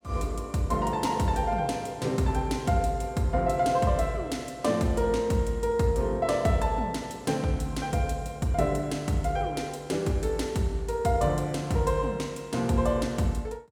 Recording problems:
none

